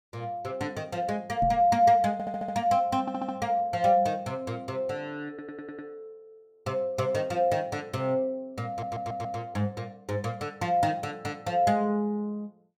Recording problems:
knock on the microphone; at 1.5 s; peak -1 dB vs average level
stutter; 4 times, first at 2 s

